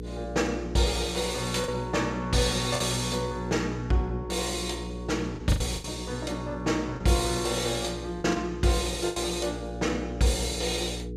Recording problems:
hum; 60 Hz, harmonics up to 480 Hz, SNR 10 dB
lost packets; 4% of the sound replaced, filled with the last packet

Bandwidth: 14.5 kHz